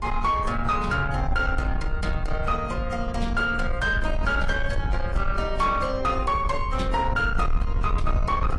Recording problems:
codec artefacts; AAC, log-spectral distance 2 dB
distorted audio; soft clipping, signal-to-distortion ratio 10 dB
rumble; below 74 Hz, strongest tone 22 Hz, SNR 5 dB

